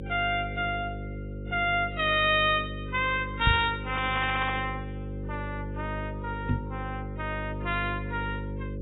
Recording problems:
lossy codec; AAC, log-spectral distance 2 dB, nothing above 3.1 kHz
electrical hum; 50 Hz, harmonics up to 550 Hz, SNR 8 dB
knock on the microphone; at 3.5 s and at 6.5 s; peak +6 dB vs average level

